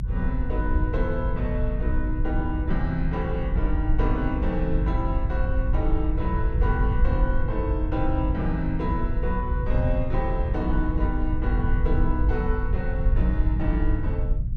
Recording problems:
rumble; below 72 Hz, SNR -3 dB

